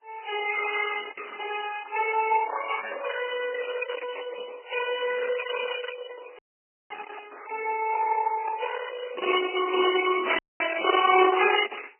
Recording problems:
codec artefacts; Opus, then MP3, log-spectral distance 6 dB, nothing above 2.9 kHz
dropout; at 6.5 s for 0.5 s and at 10 s
static burst; at 8.5 s and at 11 s; peak -13 dB vs average level

